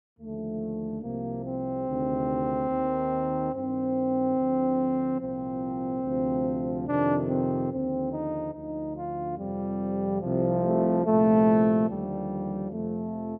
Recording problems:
none

